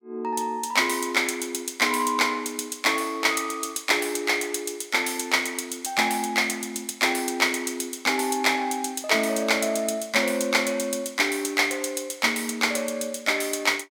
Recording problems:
none

